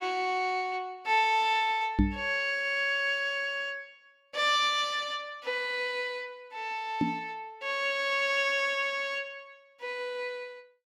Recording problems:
microphone bump; at 2 s and at 7 s; peak +8 dB vs average level

